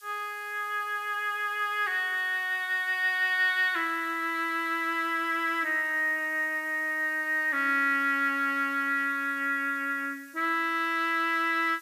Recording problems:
background hiss; SNR 25 dB

